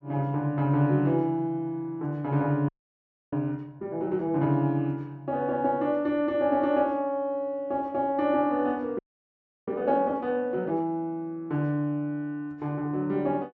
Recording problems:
audio freezing; at 2.5 s for 0.5 s and at 9 s for 0.5 s

